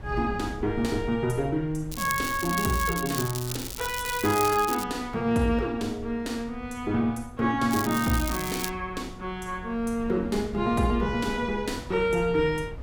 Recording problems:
wind noise; below 130 Hz, SNR 16 dB
crackle; from 2 to 5 s and at 7.5 s; loose cable, SNR 7 dB

